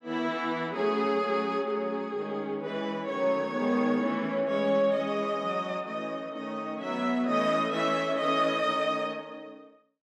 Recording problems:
none

